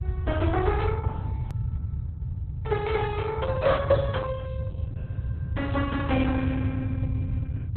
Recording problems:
lossy compression; Opus, log-spectral distance 2 dB, nothing above 3.8 kHz
rumble; below 120 Hz, SNR 0 dB
edit click; at 1.5 s

